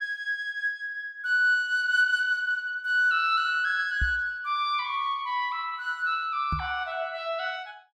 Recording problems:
knock on the microphone; at 4 s and at 6.5 s; peak 0 dB vs average level

